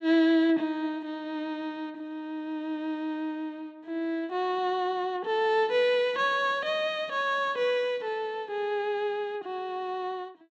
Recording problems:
none

